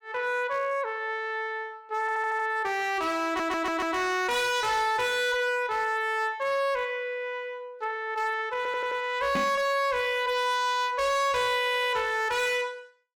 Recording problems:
distorted audio; hard clipping, uneven, signal-to-distortion ratio 7 dB
stutter; 4 times, first at 2 s
microphone bump; at 9.5 s; peak 0 dB vs average level

